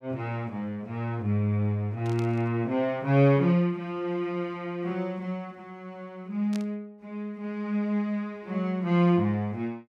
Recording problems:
static burst; at 2 s and at 6.5 s; peak -10 dB vs average level

